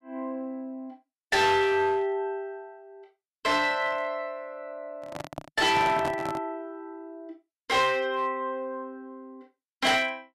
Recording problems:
distorted audio; hard clipping, uneven, signal-to-distortion ratio 10 dB
microphone handling noise; from 5 to 6.5 s; peak -2 dB vs average level

